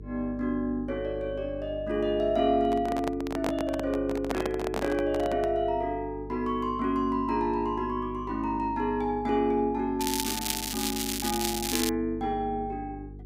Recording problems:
hum; 50 Hz, harmonics up to 450 Hz, SNR 14 dB
handling noise; from 2.5 to 5.5 s; peak +1 dB vs average level
crackle; from 10 to 12 s; loose cable, SNR 1 dB

